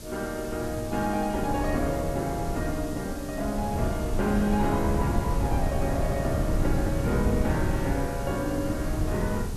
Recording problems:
hiss; slope +4 dB per octave, SNR 15 dB
wind on the microphone; below 180 Hz, SNR 1 dB

